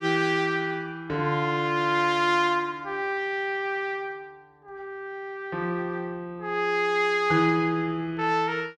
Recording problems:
none

